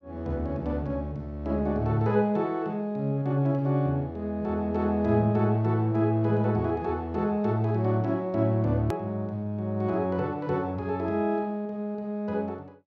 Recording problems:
click at an edit; at 9 s

